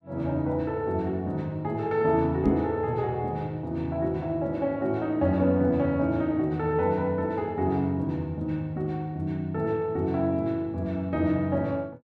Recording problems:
microphone bump; at 2.5 s; peak +6 dB vs average level

